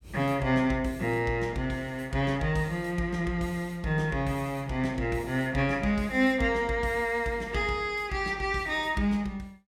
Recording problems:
none

